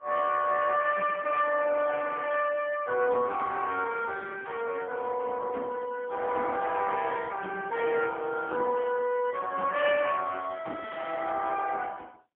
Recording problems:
telephone audio; 260 Hz to 2.9 kHz, AMR-NB, then MP3

